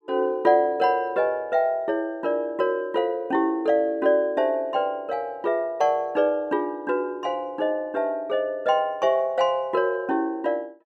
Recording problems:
none

